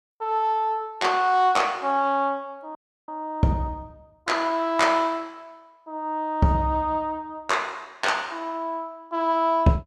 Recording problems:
frozen audio; at 3 s

